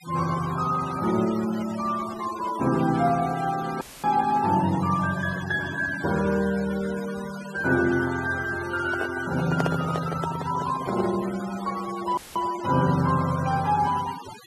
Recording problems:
denoising artefacts; signal-to-artefact ratio 13 dB
dropout; at 4 s and at 12 s; filled with static
microphone handling noise; from 9 to 11 s; peak +1 dB vs average level

